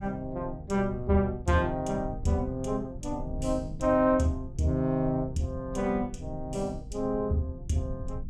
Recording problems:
low-frequency rumble; below 100 Hz, SNR 12 dB

